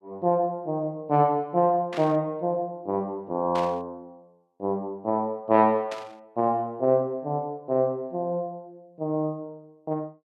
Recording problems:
static burst; at 2 s, at 3.5 s and at 6 s; peak -8 dB vs average level

